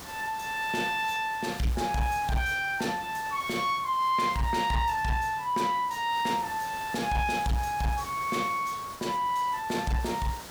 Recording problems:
distorted audio; soft clipping, signal-to-distortion ratio 12 dB
hiss; slope -3 dB per octave, SNR 15 dB

